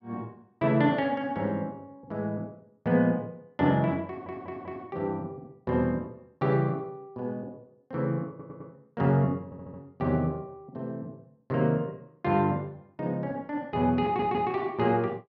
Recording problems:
audio stuttering; 4 times, first at 4 s

